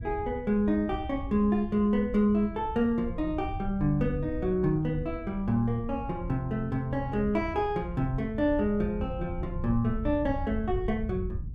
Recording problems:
rumble; below 98 Hz, SNR 10 dB

